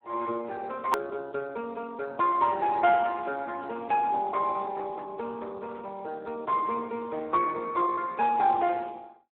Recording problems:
telephone audio; 240 Hz to 2.8 kHz, Speex
edit click; at 1 s

